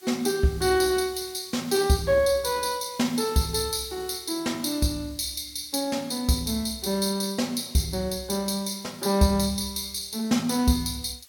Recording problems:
background hiss; slope +2 dB per octave, SNR 24 dB

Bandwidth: 17 kHz